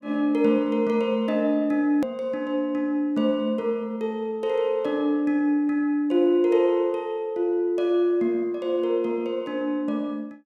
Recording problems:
hard cut with a click; at 2 s

